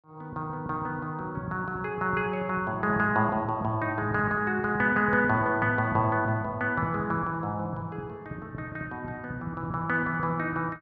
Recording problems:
none

